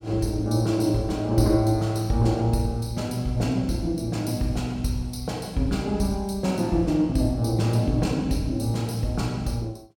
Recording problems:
none

